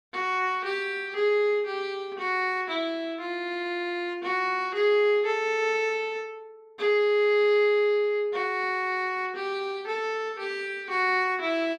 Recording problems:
none

